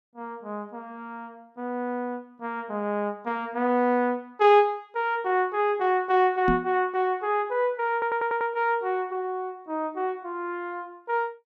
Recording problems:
microphone bump; at 6.5 s; peak +2 dB vs average level
stutter; at 8 s

